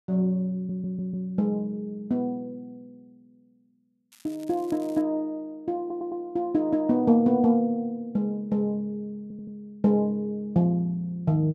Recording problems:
audio stuttering; at 0.5 s, at 6 s and at 9 s
crackle; at 4 s; loose cable, SNR 27 dB

